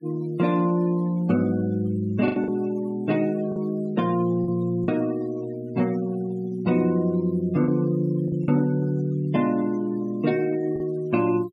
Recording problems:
noise reduction artefacts; signal-to-artefact ratio 22 dB
packet loss; 3% of the sound replaced, filled with the last packet

